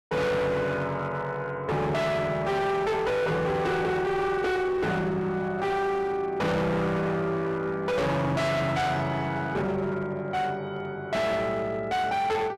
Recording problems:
distorted audio; hard clipping, signal-to-distortion ratio 6 dB

